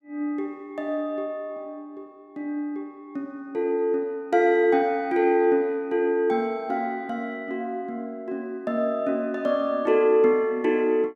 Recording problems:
none

